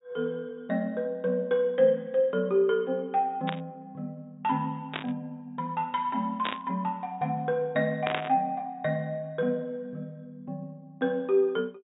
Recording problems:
treble cut off; nothing above 4 kHz
burst of static; 4 times, first at 3.5 s; peak +2 dB vs average level

